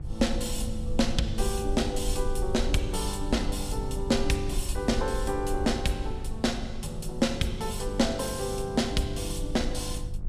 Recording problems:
hum; 50 Hz, harmonics up to 550 Hz, SNR 12 dB
rumble; below 54 Hz, SNR 7 dB

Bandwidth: 15 kHz